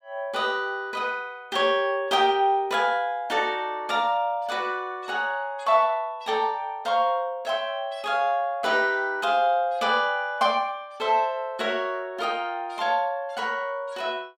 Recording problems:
none

